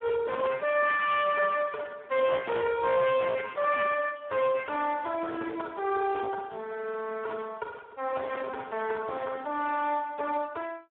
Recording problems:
telephone audio; 340 Hz to 3.5 kHz, Speex
distortion; hard clipping, uneven, signal-to-distortion ratio 12 dB

